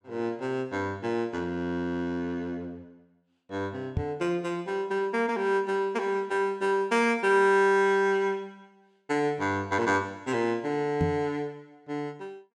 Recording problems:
microphone bump; at 4 s and at 11 s; peak +3 dB vs average level

